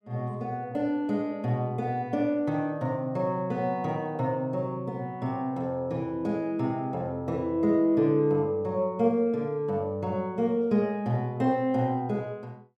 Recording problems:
none

